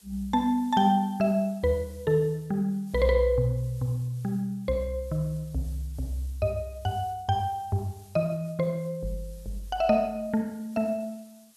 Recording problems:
background hiss; SNR 27 dB

